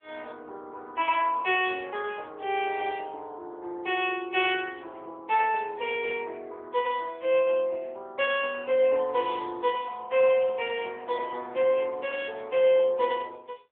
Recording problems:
phone line; 320 Hz to 3.4 kHz, AMR-NB

